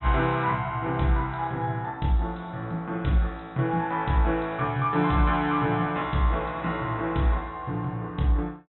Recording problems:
treble missing; nothing above 3.9 kHz

